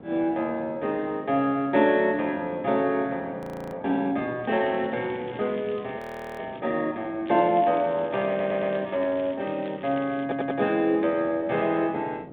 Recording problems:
telephone audio; 190 Hz to 3.6 kHz, G.726
wind noise; below 460 Hz, SNR 18 dB
frozen audio; at 3.5 s and at 6 s
crackle; from 4.5 to 6.5 s and from 7.5 to 11 s; loose cable, SNR 23 dB
audio stuttering; at 8.5 s and at 10 s

